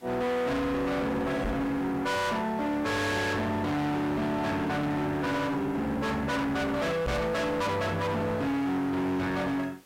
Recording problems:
distorted audio; hard clipping, signal-to-distortion ratio 6 dB
background hiss; slope -3 dB per octave, SNR 28 dB
microphone thump; at 1.5 s and at 7 s; peak +2 dB vs average level

